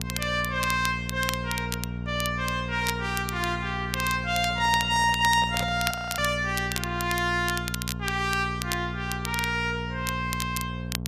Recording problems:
hum; 60 Hz, harmonics up to 900 Hz, SNR 7 dB
crackling; vinyl, SNR 9 dB
microphone handling noise; from 4.5 to 6 s; peak -5 dB vs average level
audio freezing; at 6 s

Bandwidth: 14.5 kHz